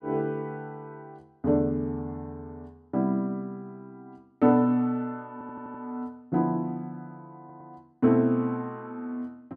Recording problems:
audio stuttering; at 5.5 s and at 7.5 s

